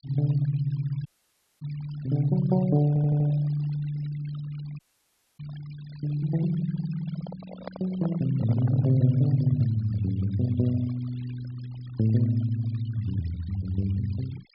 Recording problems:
treble missing; nothing above 5.5 kHz
denoising artefacts; signal-to-artefact ratio 22 dB
dropout; at 1 s for 0.5 s and at 5 s for 0.5 s
stutter; at 3 s
handling noise; from 7 to 9 s; peak -7 dB vs average level

